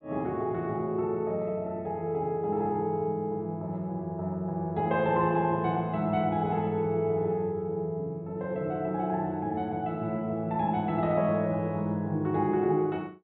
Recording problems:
low-pass filter; nothing above 4 kHz

